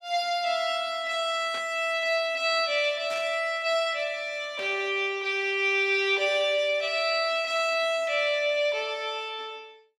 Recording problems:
static burst; at 1.5 s, at 3 s and at 4.5 s; peak -11 dB vs average level

